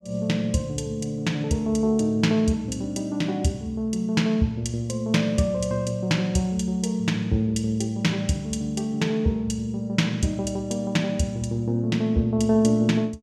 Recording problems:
none

